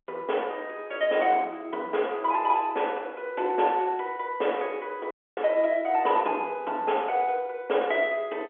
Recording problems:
phone line; 320 Hz to 3.5 kHz, G.711
dropout; at 5 s

